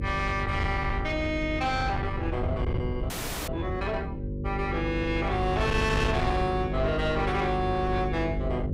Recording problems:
distorted audio; soft clipping, signal-to-distortion ratio 7 dB
hum; 50 Hz, harmonics up to 550 Hz, SNR 6 dB
wind noise; below 160 Hz, SNR 5 dB
frozen audio; at 3 s

